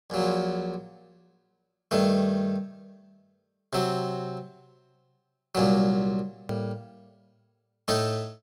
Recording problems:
edit click; at 6.5 s

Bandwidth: 16.5 kHz